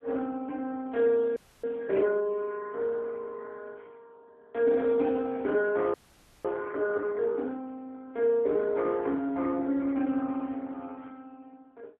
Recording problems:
telephone audio; 220 Hz to 3.5 kHz, AMR-NB
audio freezing; at 1.5 s and at 6 s for 0.5 s

